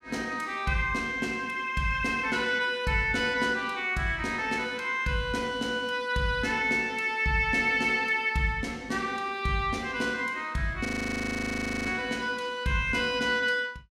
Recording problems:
frozen audio; at 11 s for 1 s

